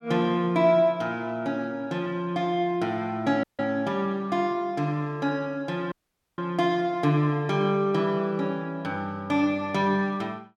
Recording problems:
dropout; at 3.5 s and at 6 s

